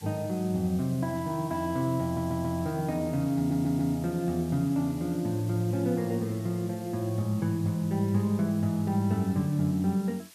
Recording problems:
background hiss; slope +2 dB per octave, SNR 21 dB
audio stuttering; at 2 s and at 3.5 s

